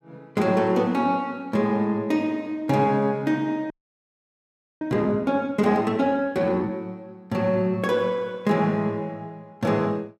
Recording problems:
audio freezing; at 3.5 s for 1 s

